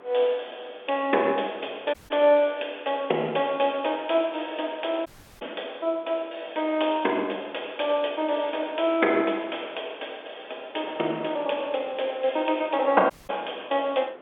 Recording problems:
telephone audio; 280 Hz to 3.6 kHz, G.711
wind noise; below 1.2 kHz, SNR 21 dB
audio cutting out; at 2 s, at 5 s and at 13 s

